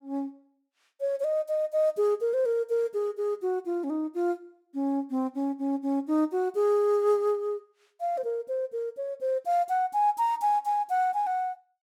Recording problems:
none

